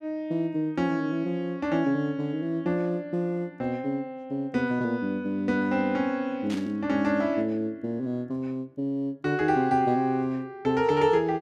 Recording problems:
burst of static; at 6.5 s; peak -9 dB vs average level

